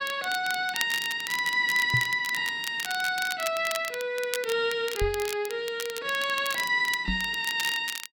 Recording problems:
crackling; vinyl, SNR 10 dB
knock on the microphone; at 2 s, at 5 s and at 7 s; peak +1 dB vs average level

